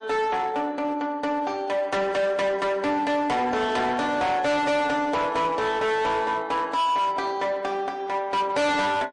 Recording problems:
codec artefacts; MP3, log-spectral distance 2 dB, nothing above 8.7 kHz
distortion; hard clipping, signal-to-distortion ratio 7 dB

